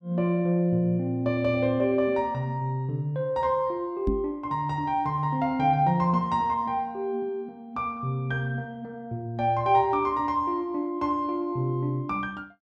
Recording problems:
microphone thump; at 4 s; peak +2 dB vs average level

